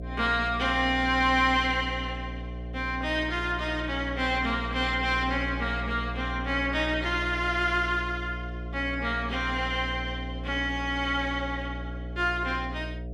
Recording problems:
hum; 60 Hz, harmonics up to 720 Hz, SNR 9 dB

